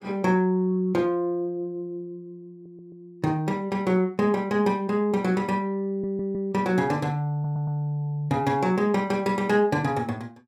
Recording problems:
audio stuttering; at 2.5 s, at 6 s and at 7.5 s

